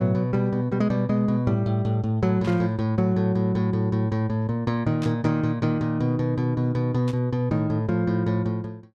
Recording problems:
static burst; at 2.5 s, at 5 s and at 7 s; peak -10 dB vs average level

